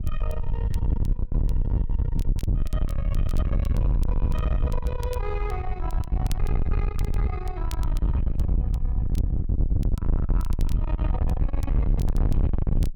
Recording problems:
distortion; soft clipping, signal-to-distortion ratio 8 dB
wind noise; below 88 Hz, SNR -10 dB
crackling; vinyl, SNR 14 dB

